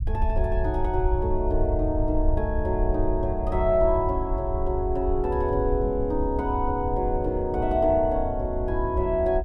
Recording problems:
low-frequency rumble; below 74 Hz, SNR 4 dB

